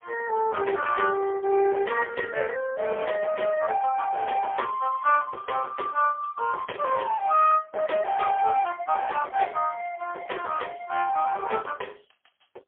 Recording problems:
telephone audio; 340 Hz to 3.3 kHz, AMR-NB, then MP3
distortion; hard clipping, uneven, signal-to-distortion ratio 11 dB

